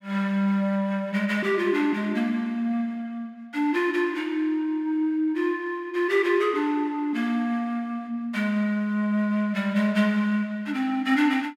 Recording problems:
none

